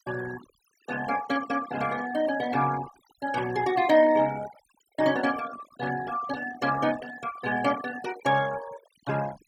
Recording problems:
denoising artefacts; signal-to-artefact ratio 15 dB

